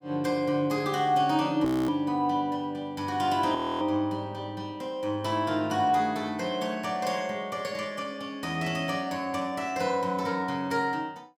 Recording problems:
audio freezing; at 1.5 s and at 3.5 s

